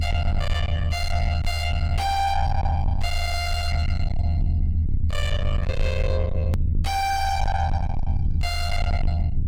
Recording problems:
distortion; soft clipping, signal-to-distortion ratio 6 dB
rumble; below 82 Hz, SNR -1 dB
hard cut with a click; at 6.5 s

